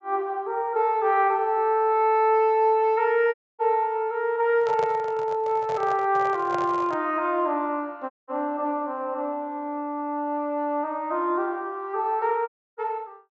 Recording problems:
treble cut off; nothing above 8 kHz
dropout; at 3.5 s, at 8 s and at 12 s
handling noise; from 4.5 to 7 s; peak -5 dB vs average level

